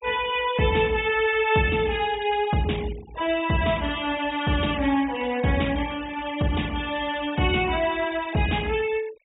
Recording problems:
treble cut off; nothing above 4 kHz
denoising artefacts; signal-to-artefact ratio 19 dB

